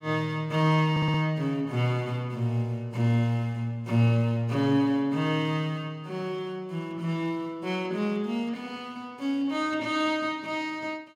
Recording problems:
stutter; at 1 s

